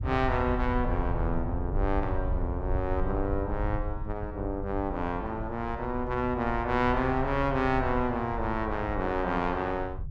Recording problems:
low-frequency rumble; below 86 Hz, SNR 6 dB

